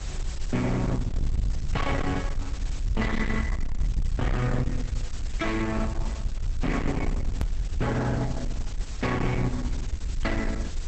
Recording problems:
codec artefacts; Opus, log-spectral distance 5 dB, nothing above 8 kHz
distorted audio; hard clipping, uneven, signal-to-distortion ratio 7 dB
background hiss; slope -1 dB per octave, SNR 15 dB
rumble; below 70 Hz, SNR 3 dB
hard cut with a click; at 7.5 s

